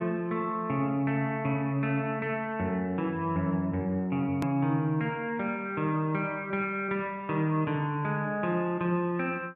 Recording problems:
hard cut with a click; at 4.5 s

